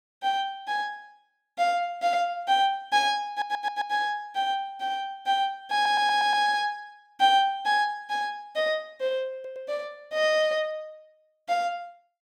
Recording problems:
stutter; at 3.5 s, at 5.5 s and at 9.5 s

